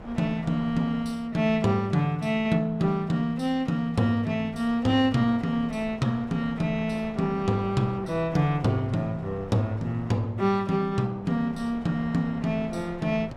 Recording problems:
wind noise; below 800 Hz, SNR 19 dB

